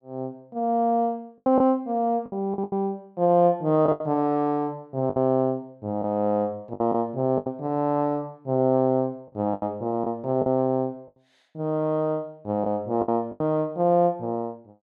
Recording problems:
packet loss; 7% of the sound replaced, filled with the last packet

